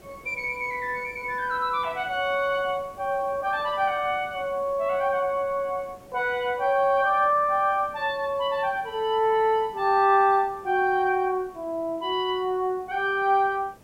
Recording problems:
hiss; SNR 26 dB

